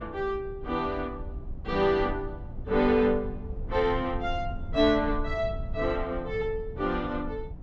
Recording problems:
treble cut off; nothing above 8 kHz
low-frequency rumble; below 88 Hz, SNR 11 dB

